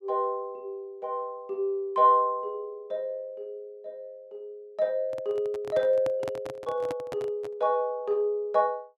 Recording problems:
handling noise; from 5 to 7.5 s; peak -5 dB vs average level

